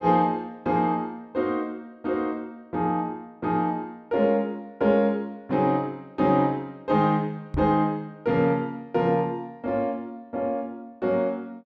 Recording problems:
knock on the microphone; at 7.5 s; peak -1 dB vs average level

